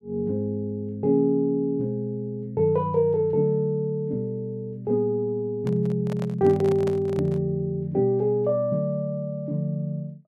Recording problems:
microphone handling noise; from 5.5 to 7.5 s; peak -6 dB vs average level

